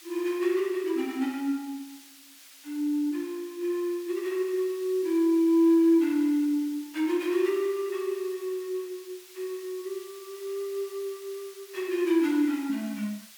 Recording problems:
background hiss; slope +4 dB per octave, SNR 21 dB

